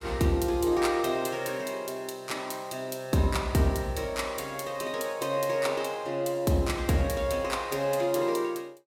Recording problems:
none

